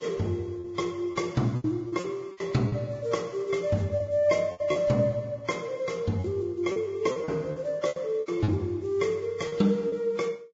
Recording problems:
codec artefacts; Vorbis, log-spectral distance 2 dB, nothing above 7.3 kHz
lost packets; 10% of the sound replaced, filled with repeated pitch periods

